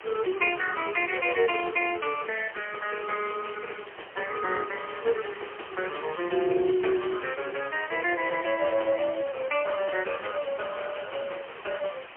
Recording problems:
phone line; 300 Hz to 3.1 kHz, AMR-NB, then MP3
background hiss; SNR 15 dB

